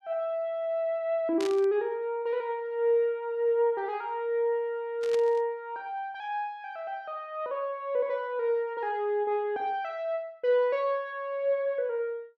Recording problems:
static burst; at 1.5 s and at 5 s; peak -6 dB vs average level

